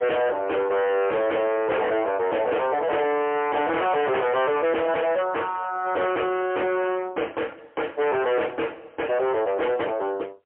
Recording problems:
telephone audio; 340 Hz to 3.3 kHz, AMR-NB, then MP3
distortion; hard clipping, signal-to-distortion ratio 5 dB

